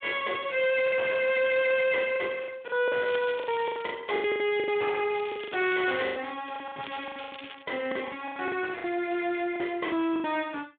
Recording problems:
telephone audio; 240 Hz to 3.6 kHz, Speex
distortion; hard clipping, signal-to-distortion ratio 12 dB
packet loss; 14% of the sound replaced, filled with the last packet
crackling; at 3 s, at 5 s and at 7 s; loose cable, SNR 15 dB

